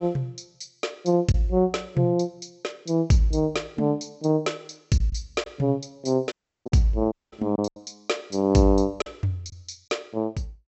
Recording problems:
treble cut off; nothing above 7.8 kHz
lost packets; 3% of the sound replaced, filled with silence
audio cutting out; at 6.5 s and at 7 s

